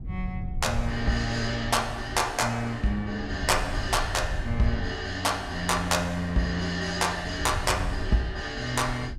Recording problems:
rumble; below 96 Hz, SNR 10 dB

